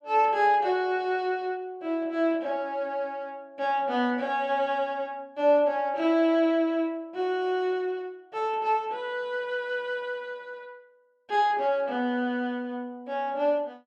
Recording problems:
none

